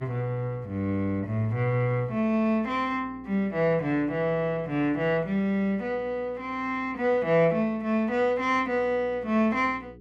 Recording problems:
electrical hum; 60 Hz, harmonics up to 420 Hz, SNR 24 dB

